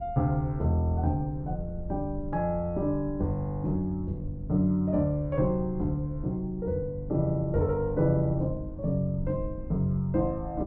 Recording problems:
low-frequency rumble; below 84 Hz, SNR 13 dB

